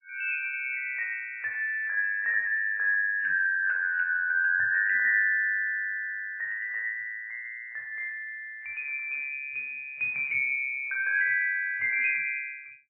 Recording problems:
lossy codec; MP3, log-spectral distance 2 dB, nothing above 2.2 kHz

